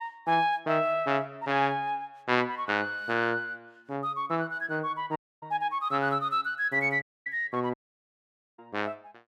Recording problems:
audio cutting out; at 5 s, at 7 s and at 7.5 s for 1 s

